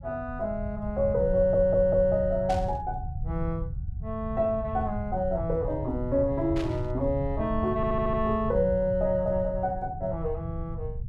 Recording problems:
rumble; below 120 Hz, SNR 8 dB
audio stuttering; at 1.5 s and at 8 s
burst of static; at 2.5 s and at 6.5 s; peak -8 dB vs average level

